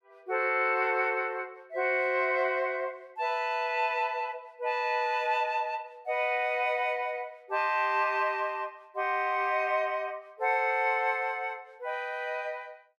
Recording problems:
none

